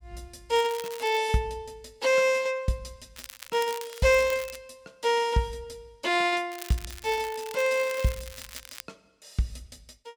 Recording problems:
crackle; at 0.5 s, from 3 to 4.5 s and from 6.5 to 9 s; loose cable, SNR 16 dB

